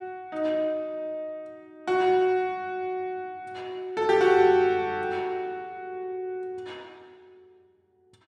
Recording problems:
none

